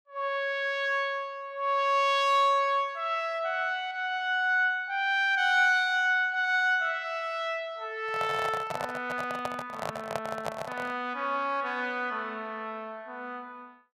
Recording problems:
microphone handling noise; from 8 to 11 s; peak -1 dB vs average level

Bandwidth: 14.5 kHz